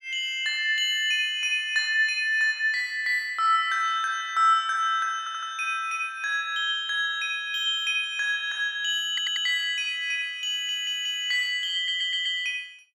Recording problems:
stutter; 4 times, first at 5 s

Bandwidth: 16.5 kHz